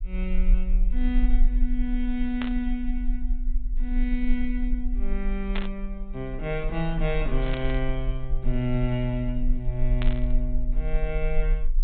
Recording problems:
treble cut off; nothing above 4 kHz
low-frequency rumble; below 38 Hz, strongest tone 28 Hz, SNR -1 dB
burst of static; 4 times, first at 2.5 s; peak +1 dB vs average level

